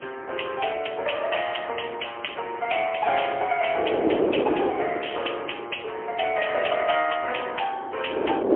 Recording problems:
phone line; 320 Hz to 3.2 kHz, AMR-NB, then MP3
wind noise; below 560 Hz, SNR 3 dB

